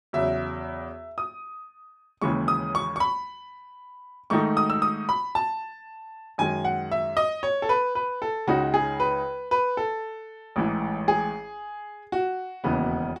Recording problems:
none

